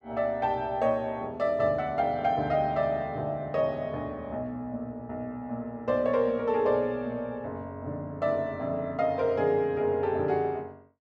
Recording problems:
none

